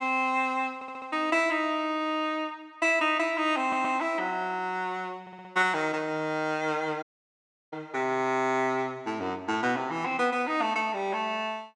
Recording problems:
audio stuttering; at 1 s, at 3.5 s and at 5 s
dropout; at 7 s for 0.5 s

